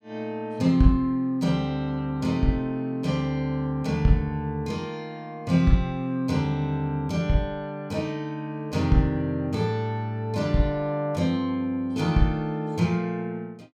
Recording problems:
none

